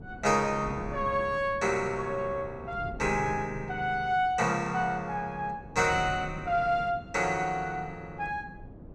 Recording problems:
wind on the microphone; below 280 Hz, SNR 15 dB

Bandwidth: 13 kHz